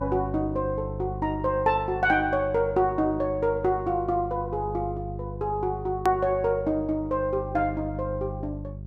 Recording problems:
hum; 50 Hz, harmonics up to 400 Hz, SNR 10 dB
hard cut with a click; at 6 s

